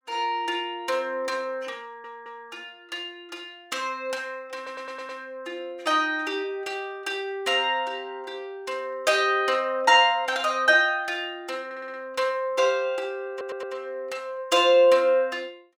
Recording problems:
audio stuttering; 4 times, first at 2 s

